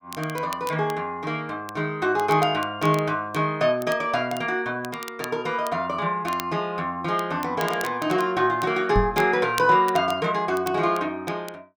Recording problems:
crackle; vinyl, SNR 18 dB
knock on the microphone; at 9 s; peak +3 dB vs average level

